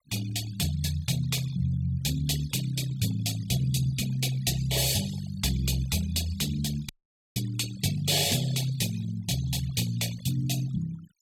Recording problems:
denoising artefacts; signal-to-artefact ratio 15 dB
audio cutting out; at 7 s

